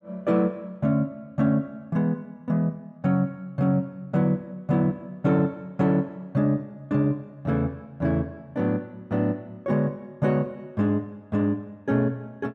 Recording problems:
none

